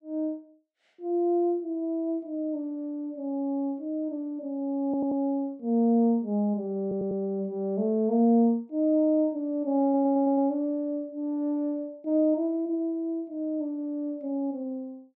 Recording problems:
audio stuttering; at 5 s, at 7 s and at 10 s

